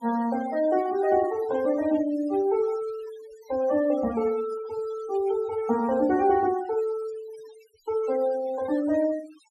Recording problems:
denoising artefacts; signal-to-artefact ratio 19 dB

